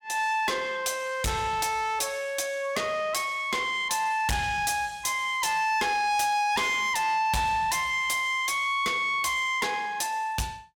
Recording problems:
distortion; soft clipping, signal-to-distortion ratio 8 dB

